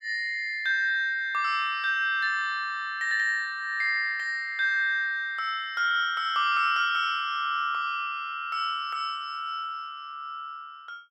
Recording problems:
none

